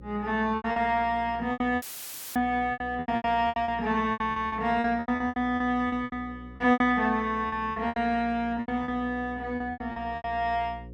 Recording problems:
electrical hum; 60 Hz, harmonics up to 540 Hz, SNR 18 dB
packet loss; 17% of the sound replaced, filled with repeated pitch periods
audio cutting out; at 2 s for 0.5 s; filled with static

